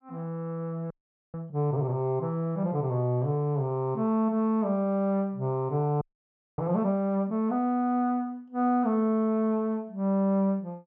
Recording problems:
audio freezing; at 1 s and at 6 s for 0.5 s

